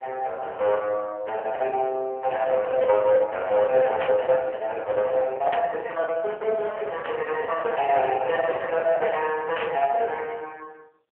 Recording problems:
phone line; 340 Hz to 3.3 kHz, AMR-NB
distorted audio; hard clipping, signal-to-distortion ratio 13 dB
lost packets; 10% of the sound replaced, filled with the last packet
burst of static; 4 times, first at 4 s; peak -3 dB vs average level

